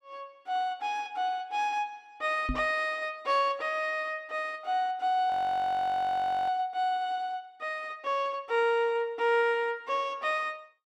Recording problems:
microphone thump; at 2.5 s; peak 0 dB vs average level
frozen audio; at 5.5 s for 1 s

